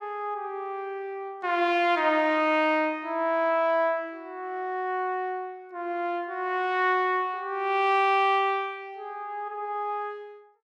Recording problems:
none

